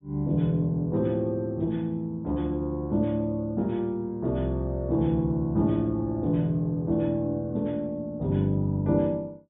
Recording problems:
low-pass filter; nothing above 4 kHz

